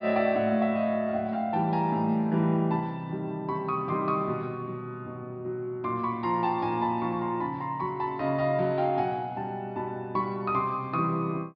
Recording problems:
low-pass filter; nothing above 5.5 kHz

